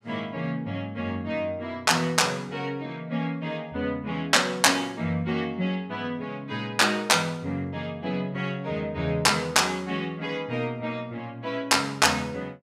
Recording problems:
none

